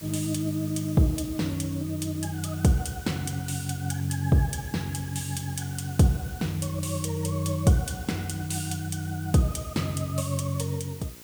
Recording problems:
electrical hum; 60 Hz, harmonics up to 1.1 kHz, SNR 24 dB
background hiss; slope +1 dB per octave, SNR 17 dB

